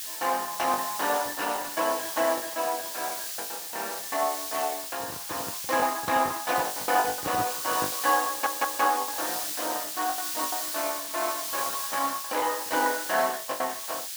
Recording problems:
lossy compression; Opus, log-spectral distance 4 dB, nothing above 19 kHz
background hiss; slope +6 dB per octave, SNR 3 dB
packet loss; 11% of the sound replaced, filled with the last packet
handling noise; from 5 to 8 s; peak -2 dB vs average level
audio stuttering; at 8.5 s

